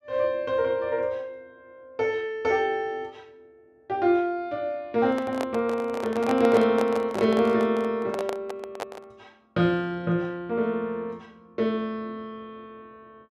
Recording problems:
microphone handling noise; from 5 to 9 s; peak -1 dB vs average level

